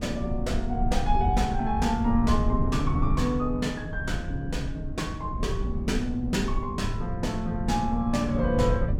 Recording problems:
rumble; below 100 Hz, SNR 3 dB

